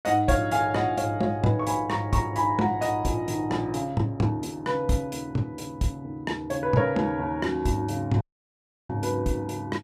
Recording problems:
audio cutting out; at 8 s for 0.5 s

